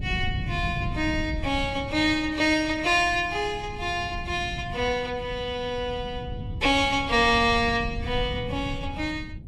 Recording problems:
lossy codec; Vorbis, log-spectral distance 3 dB, nothing above 11.6 kHz
wind noise; below 150 Hz, SNR 10 dB

